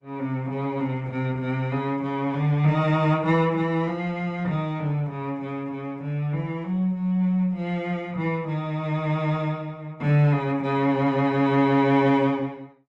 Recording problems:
codec artefacts; Opus, log-spectral distance 2 dB

